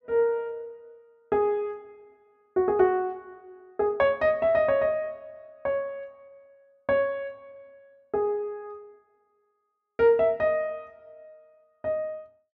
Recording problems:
none

